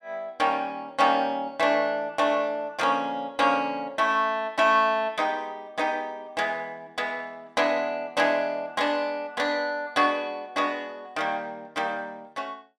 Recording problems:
none

